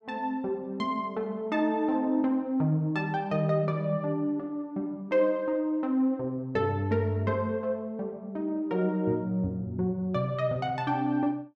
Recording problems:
none

